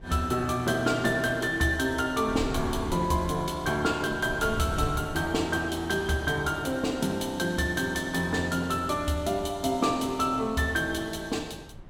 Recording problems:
wind noise; below 180 Hz, SNR 15 dB

